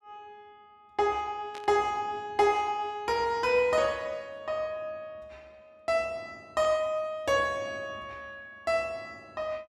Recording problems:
burst of static; at 1.5 s and at 6.5 s; peak -12 dB vs average level

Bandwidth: 13.5 kHz